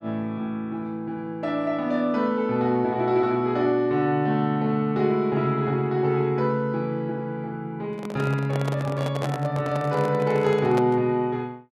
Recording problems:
microphone handling noise; from 8 to 11 s; peak -2 dB vs average level

